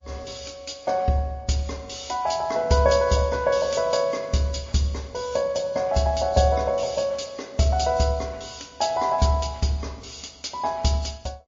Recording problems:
lossy compression; MP3, log-spectral distance 5 dB, nothing above 6 kHz

